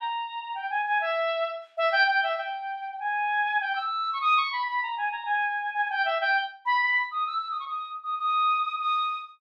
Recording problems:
none

